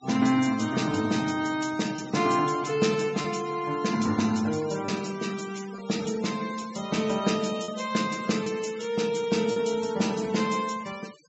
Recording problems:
treble missing; nothing above 7.7 kHz
noise reduction artefacts; signal-to-artefact ratio 16 dB
packet loss; 1.6% of the sound replaced, filled with repeated pitch periods

